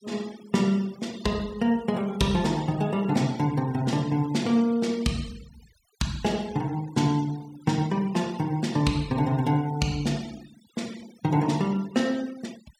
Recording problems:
denoising artefacts; signal-to-artefact ratio 21 dB

